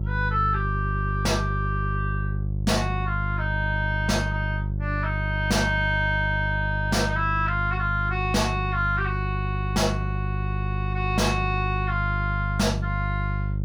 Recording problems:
distortion; soft clipping, signal-to-distortion ratio 7 dB
hum; 50 Hz, harmonics up to 400 Hz, SNR 2 dB

